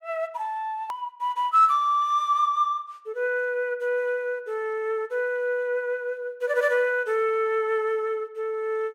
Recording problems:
click at an edit; at 1 s

